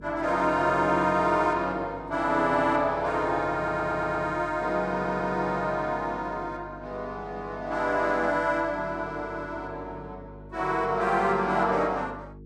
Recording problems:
hum; 50 Hz, harmonics up to 450 Hz, SNR 19 dB
audio stuttering; at 3.5 s and at 5 s

